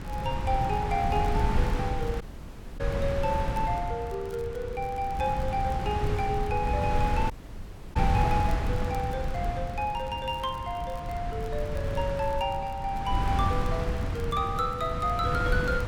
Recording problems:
wind noise; below 170 Hz, SNR 1 dB
crackling; vinyl, SNR 27 dB
audio cutting out; at 2 s for 0.5 s and at 7.5 s for 0.5 s

